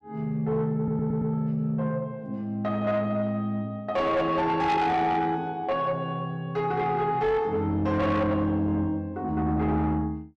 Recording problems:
distortion; soft clipping, signal-to-distortion ratio 11 dB
audio stuttering; at 1 s

